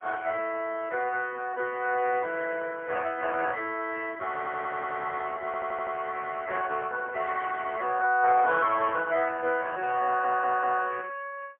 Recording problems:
phone line; 280 Hz to 3.3 kHz, AMR-NB, then MP3
stutter; at 4.5 s, at 5.5 s and at 10 s

